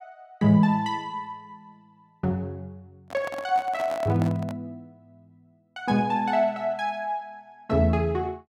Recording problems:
handling noise; from 3 to 4.5 s; peak -6 dB vs average level

